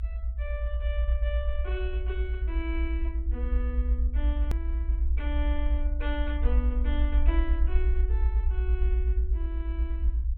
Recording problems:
low-pass filter; nothing above 4 kHz
low-frequency rumble; below 62 Hz, SNR -10 dB
click at an edit; at 4.5 s

